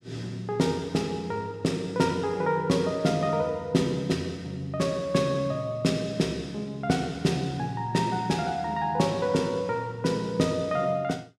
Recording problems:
none

